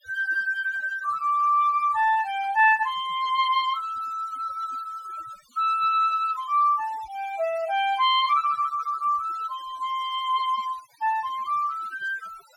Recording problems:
noise reduction artefacts; signal-to-artefact ratio 24 dB

